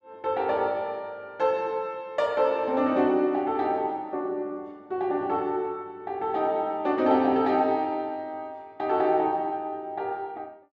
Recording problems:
none

